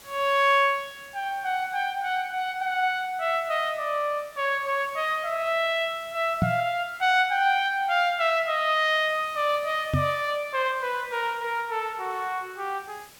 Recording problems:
hiss; slope -1 dB per octave, SNR 24 dB
microphone bump; at 6.5 s and at 10 s; peak +5 dB vs average level

